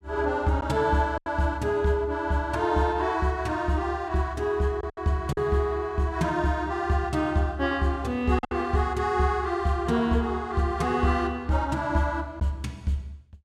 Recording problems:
packet loss; 3% of the sound replaced, filled with silence

